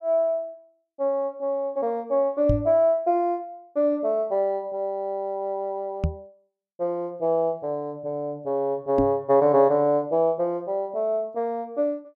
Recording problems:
microphone bump; at 2.5 s, at 6 s and at 9 s; peak +4 dB vs average level

